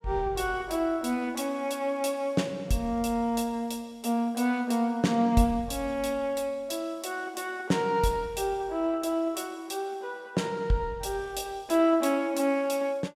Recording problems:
none

